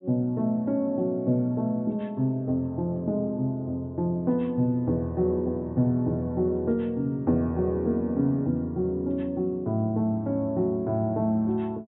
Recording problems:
treble cut off; nothing above 3.8 kHz

